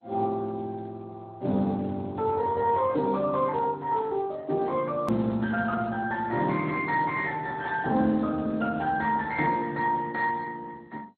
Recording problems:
codec artefacts; Speex, then MP2, log-spectral distance 3 dB, nothing above 13.1 kHz
click at an edit; at 5 s

